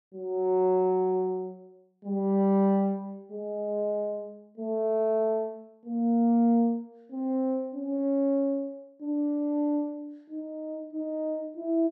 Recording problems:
none

